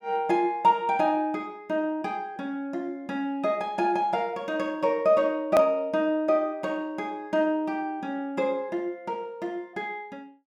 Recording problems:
edit click; at 5.5 s

